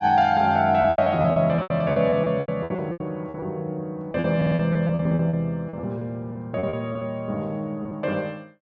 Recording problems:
low-pass filter; nothing above 7.3 kHz
packet loss; 15% of the sound replaced, filled with repeated pitch periods
stutter; at 4.5 s

